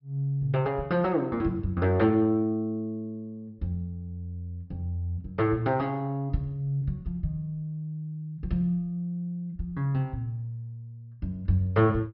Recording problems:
treble missing; nothing above 5.5 kHz

